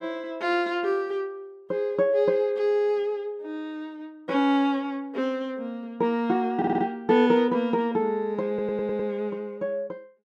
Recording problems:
stutter; at 6.5 s and at 8.5 s

